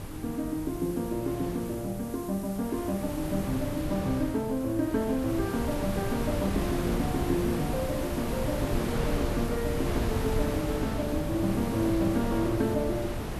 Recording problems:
hum; 50 Hz, harmonics up to 400 Hz, SNR 18 dB
background hiss; slope +2 dB per octave, SNR 17 dB
wind on the microphone; below 480 Hz, SNR 3 dB

